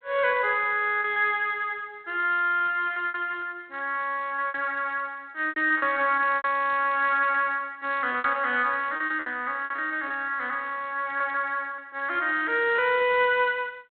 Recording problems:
telephone audio; 280 Hz to 3.4 kHz, G.726
packet loss; 7% of the sound replaced, filled with repeated pitch periods

